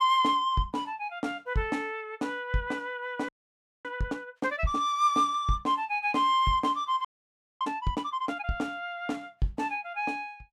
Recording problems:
frozen audio; at 3.5 s for 0.5 s and at 7 s for 0.5 s

